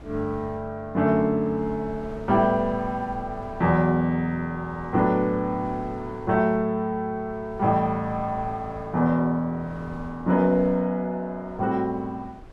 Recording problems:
wind on the microphone; below 320 Hz, SNR 20 dB

